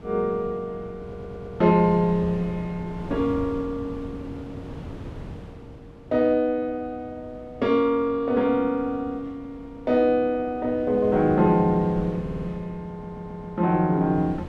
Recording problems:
wind on the microphone; below 340 Hz, SNR 16 dB
stutter; at 1 s, at 12 s and at 13 s

